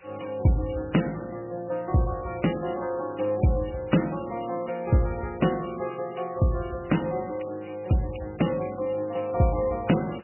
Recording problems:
lossy compression; MP3, log-spectral distance 11 dB, nothing above 2.9 kHz
hiss; SNR 28 dB

